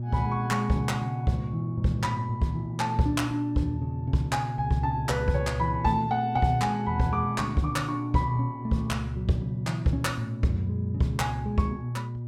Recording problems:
electrical hum; 60 Hz, harmonics up to 600 Hz, SNR 7 dB

